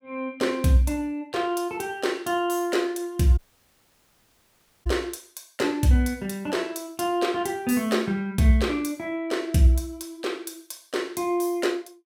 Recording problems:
dropout; at 3.5 s for 1.5 s

